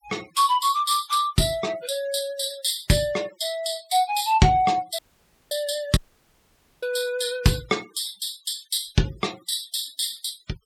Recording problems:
noise reduction artefacts; signal-to-artefact ratio 20 dB
dropout; at 5 s for 0.5 s and at 6 s for 1 s

